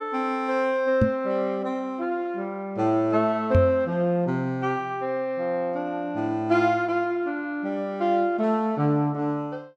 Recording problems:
microphone thump; at 1 s and at 3.5 s; peak +7 dB vs average level

